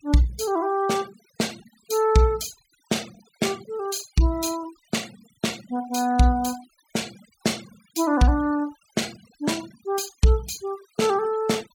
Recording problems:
denoising artefacts; signal-to-artefact ratio 19 dB

